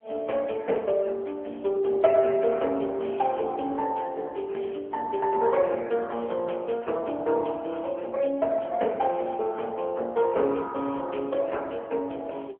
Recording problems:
phone line; 300 Hz to 3.2 kHz, AMR-NB

